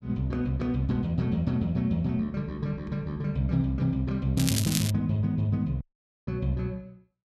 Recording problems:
crackling; at 4.5 s; loose cable, SNR 3 dB
dropout; at 6 s

